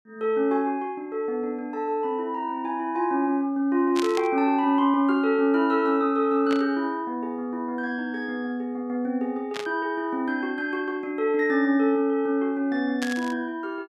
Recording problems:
static burst; 4 times, first at 4 s; peak -4 dB vs average level

